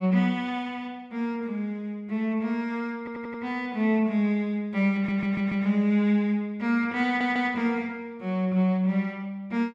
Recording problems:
audio stuttering; at 3 s, at 5 s and at 7 s

